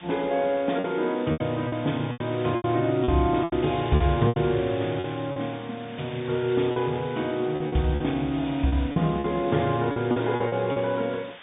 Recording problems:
treble missing; nothing above 3.7 kHz
background hiss; SNR 17 dB
packet loss; 10% of the sound replaced, filled with repeated pitch periods

